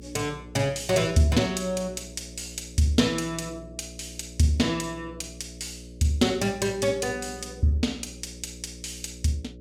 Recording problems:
hum; 60 Hz, harmonics up to 600 Hz, SNR 17 dB

